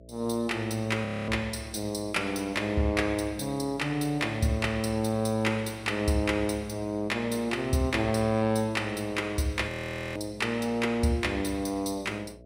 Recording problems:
hum; 60 Hz, harmonics up to 660 Hz, SNR 22 dB
audio freezing; at 1 s and at 9.5 s

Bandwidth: 15.5 kHz